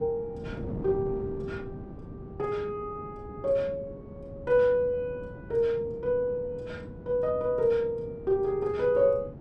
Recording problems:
wind noise; below 310 Hz, SNR 13 dB

